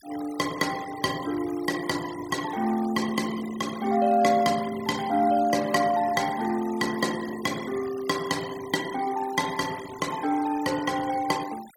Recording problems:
denoising artefacts; signal-to-artefact ratio 16 dB

